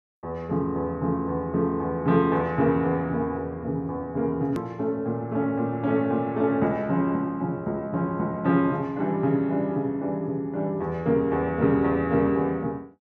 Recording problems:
edit click; at 4.5 s

